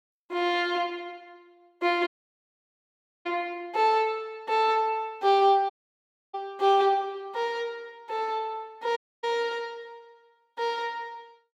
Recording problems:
audio cutting out; at 2 s for 1 s, at 5.5 s for 0.5 s and at 9 s

